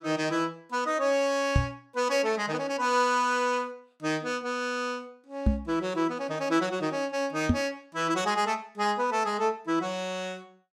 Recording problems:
knock on the microphone; at 1.5 s, at 5.5 s and at 7.5 s; peak +8 dB vs average level

